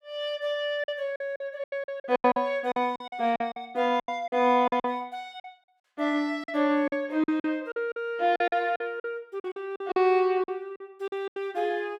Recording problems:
packet loss; 14% of the sound replaced, filled with silence

